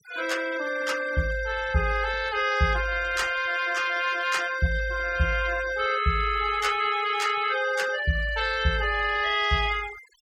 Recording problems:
noise reduction artefacts; signal-to-artefact ratio 16 dB

